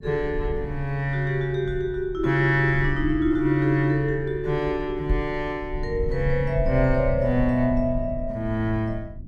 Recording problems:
low-frequency rumble; below 70 Hz, SNR 11 dB
microphone bump; at 5 s; peak +3 dB vs average level

